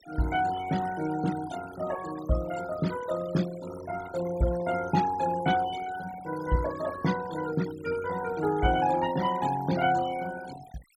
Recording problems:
denoising artefacts; signal-to-artefact ratio 14 dB

